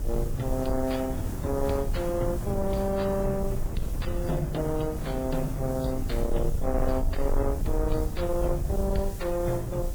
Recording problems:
lossy codec; MP3, log-spectral distance 2 dB
distortion; soft clipping, signal-to-distortion ratio 12 dB
hiss; slope +1 dB per octave, SNR 17 dB
rumble; below 64 Hz, SNR 5 dB
wind on the microphone; below 270 Hz, SNR 9 dB

